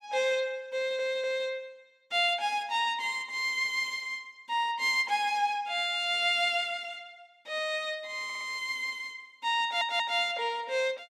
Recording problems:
audio stuttering; at 1 s, at 8 s and at 9.5 s

